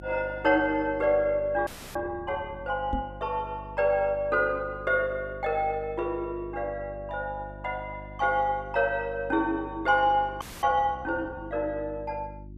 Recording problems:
hum; 50 Hz, harmonics up to 350 Hz, SNR 17 dB
audio freezing; at 1.5 s and at 10 s
microphone thump; at 3 s; peak 0 dB vs average level

